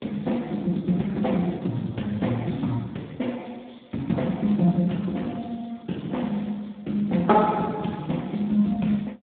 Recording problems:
telephone audio; 150 Hz to 3.5 kHz, Speex

